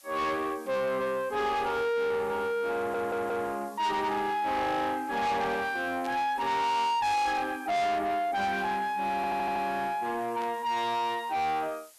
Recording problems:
distortion; soft clipping, signal-to-distortion ratio 7 dB
hiss; SNR 25 dB
stutter; at 3 s and at 9 s
static burst; at 6 s and at 10 s; peak -11 dB vs average level

